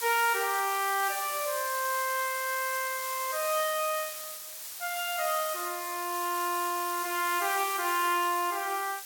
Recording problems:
hiss; slope +3 dB per octave, SNR 6 dB

